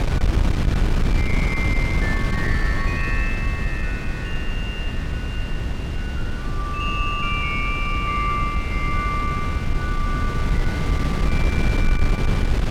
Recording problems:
hum; 50 Hz, harmonics up to 550 Hz, SNR 19 dB
wind noise; below 140 Hz, SNR -4 dB

